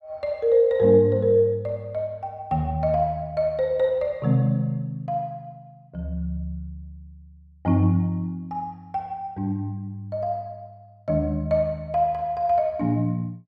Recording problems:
none

